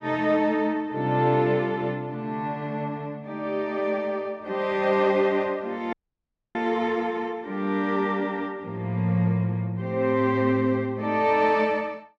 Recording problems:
audio cutting out; at 6 s for 0.5 s

